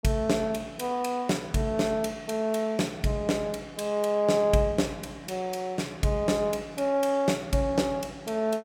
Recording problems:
none

